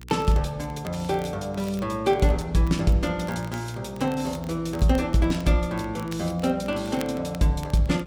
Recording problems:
hum; 60 Hz, harmonics up to 480 Hz, SNR 20 dB
crackle; vinyl, SNR 23 dB

